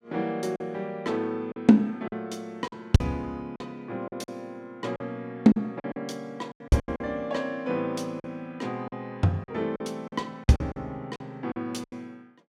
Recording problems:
lost packets; 10% of the sound replaced, filled with silence

